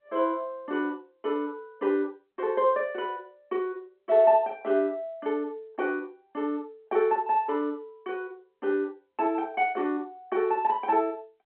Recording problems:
phone line; 240 Hz to 3.9 kHz, G.711

